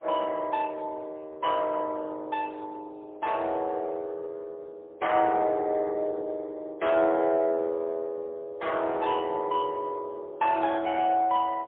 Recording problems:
telephone audio; 340 Hz to 4 kHz, AMR-NB, then MP3

